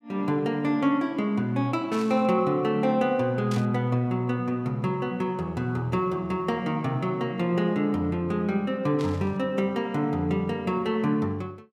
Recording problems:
static burst; at 2 s, at 3.5 s and at 9 s; peak -9 dB vs average level

